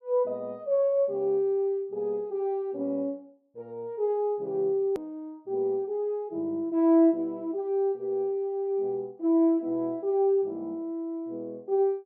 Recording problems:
hard cut with a click; at 5 s

